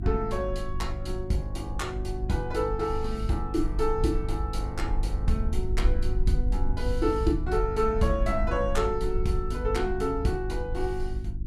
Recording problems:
hum; 50 Hz, harmonics up to 350 Hz, SNR 7 dB
low-frequency rumble; below 54 Hz, SNR 4 dB

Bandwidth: 14 kHz